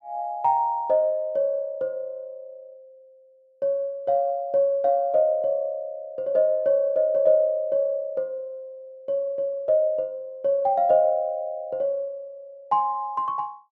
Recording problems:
none

